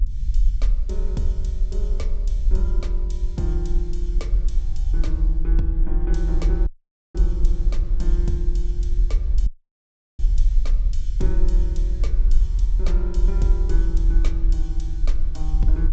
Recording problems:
treble cut off; nothing above 8 kHz
mains hum; 50 Hz, harmonics up to 400 Hz, SNR 24 dB
low-frequency rumble; below 42 Hz, SNR -10 dB
audio cutting out; at 6.5 s and at 9.5 s for 0.5 s

